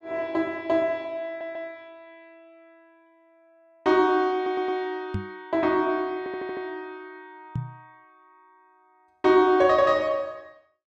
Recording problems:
audio stuttering; at 1.5 s, at 4.5 s and at 6 s
knock on the microphone; at 5 s and at 7.5 s; peak -2 dB vs average level

